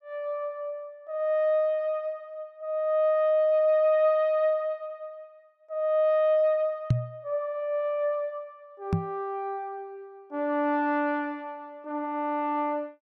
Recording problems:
microphone bump; at 7 s and at 9 s; peak +7 dB vs average level

